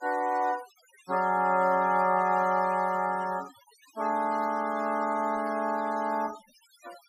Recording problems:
denoising artefacts; signal-to-artefact ratio 21 dB

